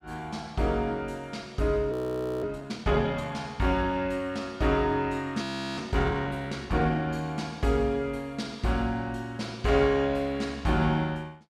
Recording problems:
frozen audio; at 2 s for 0.5 s and at 5.5 s

